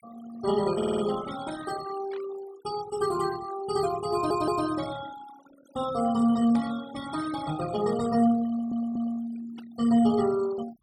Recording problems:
denoising artefacts; signal-to-artefact ratio 15 dB
stutter; at 1 s, at 4 s and at 8.5 s
burst of static; at 2 s, at 6.5 s and at 9.5 s; peak -16 dB vs average level

